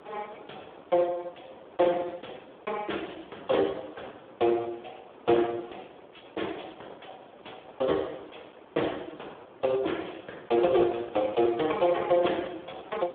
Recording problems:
phone line; 280 Hz to 2.2 kHz, Speex
wind noise; below 980 Hz, SNR 23 dB

